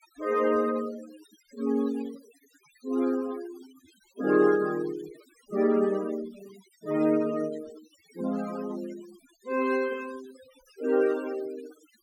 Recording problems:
noise reduction artefacts; signal-to-artefact ratio 18 dB

